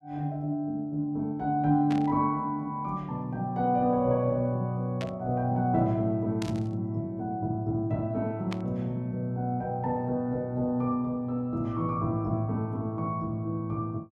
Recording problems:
static burst; 4 times, first at 2 s; peak -5 dB vs average level

